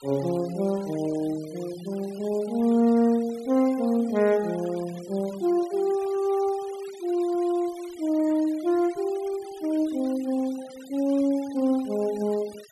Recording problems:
denoising artefacts; signal-to-artefact ratio 22 dB

